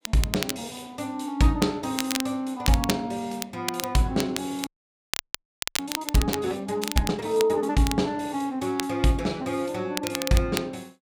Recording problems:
crackling; vinyl, SNR 6 dB
audio freezing; at 4.5 s for 1 s

